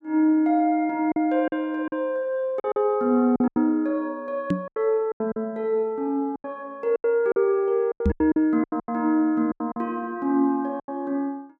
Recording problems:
lost packets; 11% of the sound replaced, filled with silence
knock on the microphone; at 4.5 s and at 8 s; peak +5 dB vs average level

